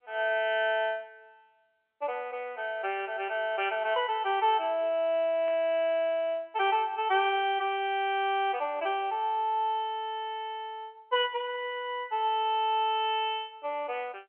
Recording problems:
phone line; 260 Hz to 3.2 kHz, G.711
burst of static; at 5.5 s; peak -16 dB vs average level

